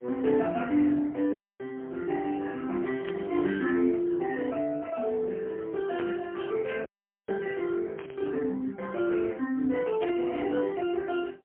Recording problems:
telephone audio; 220 Hz to 2.8 kHz, AMR-NB, then MP3
dropout; at 1.5 s and at 7 s
static burst; 4 times, first at 3 s; peak -6 dB vs average level

